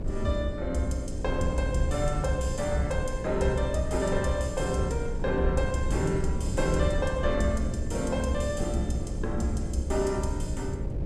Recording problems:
hum; 60 Hz, harmonics up to 600 Hz, SNR 11 dB
rumble; below 100 Hz, SNR 12 dB
wind noise; below 110 Hz, SNR 6 dB

